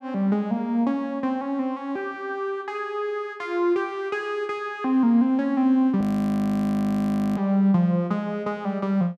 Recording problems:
frozen audio; at 6 s for 1.5 s

